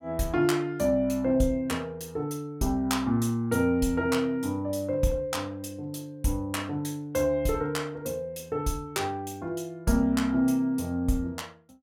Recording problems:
none

